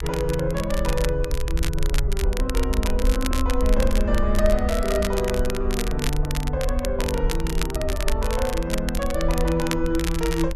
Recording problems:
low-frequency rumble; below 58 Hz, SNR 2 dB
crackling; vinyl, SNR 8 dB

